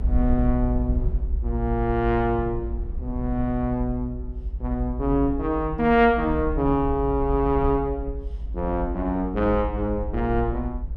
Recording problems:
low-frequency rumble; below 62 Hz, SNR 6 dB

